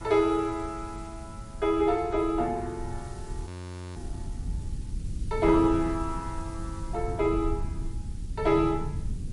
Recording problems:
lossy codec; MP3, log-spectral distance 3 dB, nothing above 13.1 kHz
hiss; slope +2 dB per octave, SNR 26 dB
low-frequency rumble; below 98 Hz, SNR 10 dB
frozen audio; at 3.5 s

